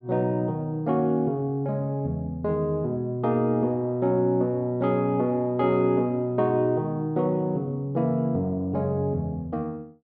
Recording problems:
none

